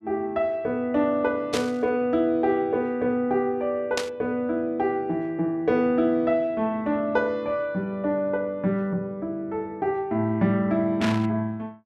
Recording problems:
static burst; at 1.5 s, at 4 s and at 11 s; peak +1 dB vs average level

